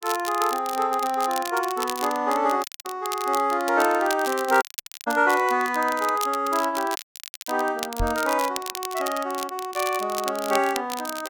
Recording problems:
crackling; vinyl, SNR 11 dB
dropout; at 2.5 s, at 4.5 s and at 7 s for 0.5 s
microphone thump; at 8 s; peak -1 dB vs average level

